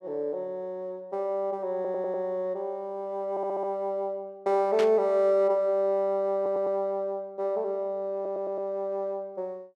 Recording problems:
audio stuttering; 4 times, first at 2 s
burst of static; at 5 s; peak -2 dB vs average level

